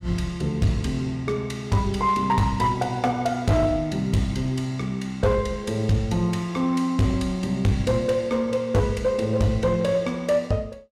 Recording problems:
distorted audio; hard clipping, uneven, signal-to-distortion ratio 11 dB

